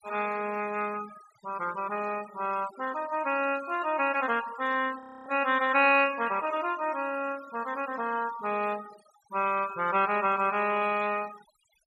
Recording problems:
denoising artefacts; signal-to-artefact ratio 18 dB
audio freezing; at 5 s

